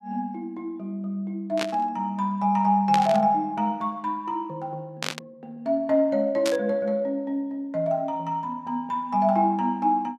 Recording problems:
static burst; 4 times, first at 1.5 s; peak +1 dB vs average level

